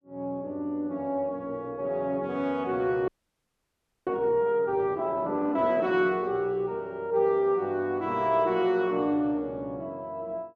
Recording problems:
frozen audio; at 3 s for 1 s

